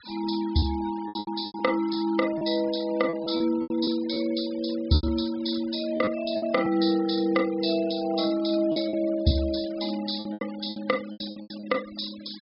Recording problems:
treble cut off; nothing above 5.5 kHz
noise reduction artefacts; signal-to-artefact ratio 19 dB
packet loss; 10% of the sound replaced, filled with repeated pitch periods

